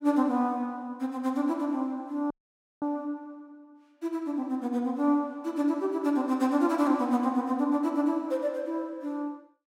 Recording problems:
audio cutting out; at 2.5 s for 0.5 s

